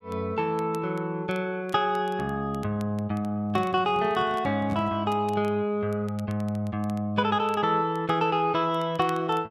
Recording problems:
crackling; vinyl, SNR 27 dB
handling noise; from 3.5 to 5 s; peak -5 dB vs average level

